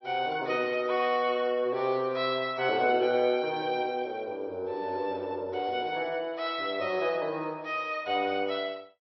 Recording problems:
codec artefacts; MP3, log-spectral distance 2 dB, nothing above 5.5 kHz

